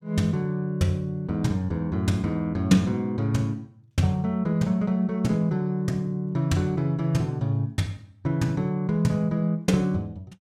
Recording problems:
none

